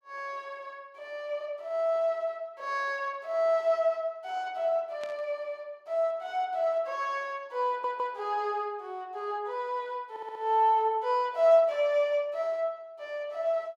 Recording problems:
burst of static; at 5 s; peak -12 dB vs average level
audio stuttering; at 7.5 s and at 10 s

